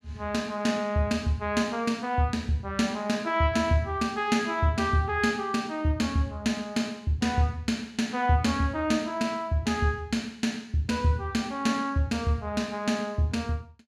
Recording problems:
none

